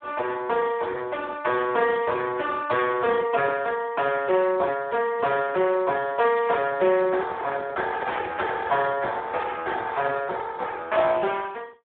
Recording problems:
telephone audio; 320 Hz to 3.8 kHz, Speex
handling noise; from 5 to 9 s; peak -6 dB vs average level

